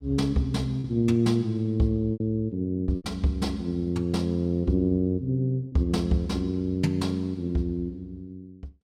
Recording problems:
lost packets; 3% of the sound replaced, filled with repeated pitch periods

